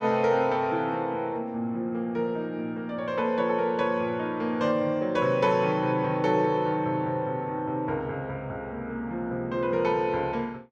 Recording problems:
none

